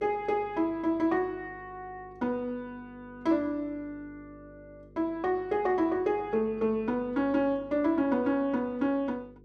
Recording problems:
hum; 50 Hz, harmonics up to 500 Hz, SNR 24 dB

